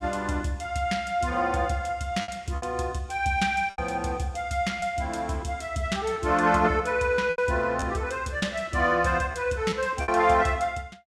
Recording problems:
packet loss; 5% of the sound replaced, filled with repeated pitch periods

